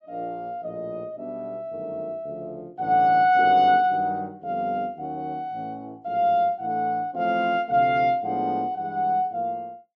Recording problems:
none

